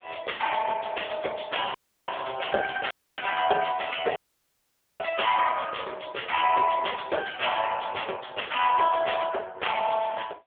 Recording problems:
phone line; 340 Hz to 3.5 kHz, AMR-NB
audio cutting out; at 2 s, at 3 s and at 4 s for 1 s

